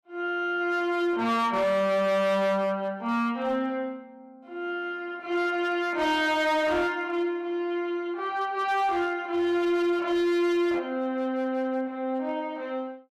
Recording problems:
distortion; hard clipping, signal-to-distortion ratio 11 dB

